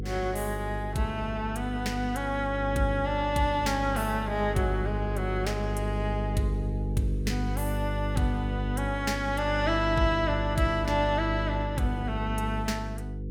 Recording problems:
hum; 50 Hz, harmonics up to 500 Hz, SNR 3 dB

